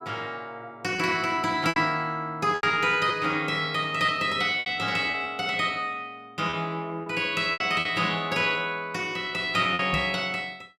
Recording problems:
packet loss; 6% of the sound replaced, filled with repeated pitch periods
microphone thump; at 10 s; peak -2 dB vs average level

